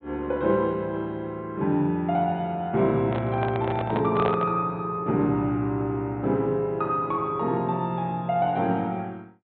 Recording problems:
treble cut off; nothing above 4 kHz
microphone handling noise; from 3 to 4.5 s; peak +2 dB vs average level

